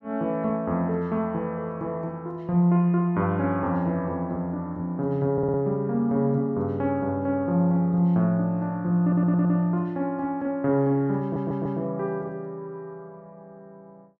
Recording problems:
audio stuttering; at 5.5 s, at 9 s and at 11 s

